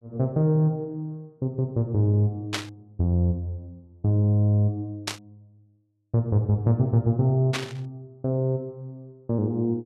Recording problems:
static burst; at 2.5 s, at 5 s and at 7.5 s; peak +1 dB vs average level

